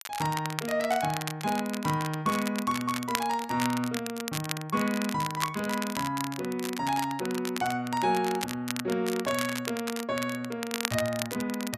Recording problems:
crackling; vinyl, SNR 7 dB

